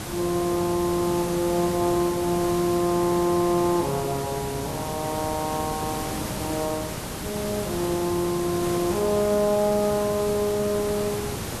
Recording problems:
hiss; slope -4 dB per octave, SNR 6 dB

